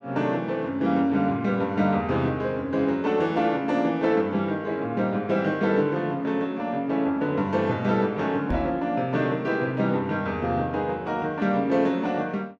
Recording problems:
knock on the microphone; at 8.5 s; peak 0 dB vs average level

